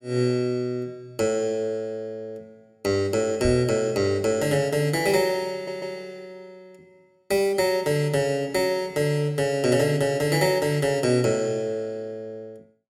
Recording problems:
knock on the microphone; at 3.5 s; peak -2 dB vs average level
stutter; at 5.5 s

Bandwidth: 16.5 kHz